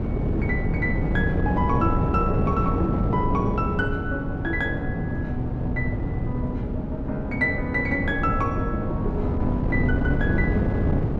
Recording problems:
wind noise; below 260 Hz, SNR -1 dB

